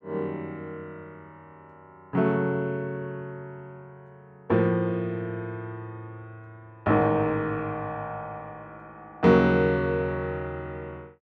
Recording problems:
none

